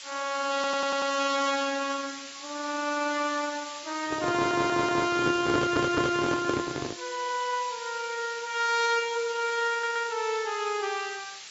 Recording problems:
lossy compression; AAC, log-spectral distance 13 dB, nothing above 7.1 kHz
background hiss; slope +4 dB per octave, SNR 11 dB
audio stuttering; 4 times, first at 0.5 s
microphone handling noise; from 4 to 7 s; peak +4 dB vs average level

